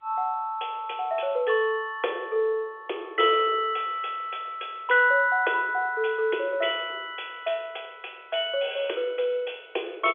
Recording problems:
phone line; 320 Hz to 3.5 kHz, G.711

